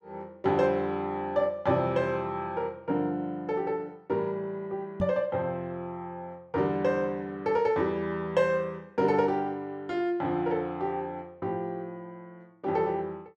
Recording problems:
microphone thump; at 5 s; peak +2 dB vs average level

